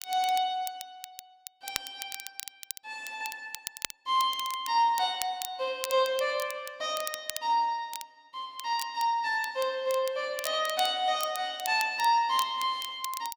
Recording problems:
crackle; vinyl, SNR 11 dB

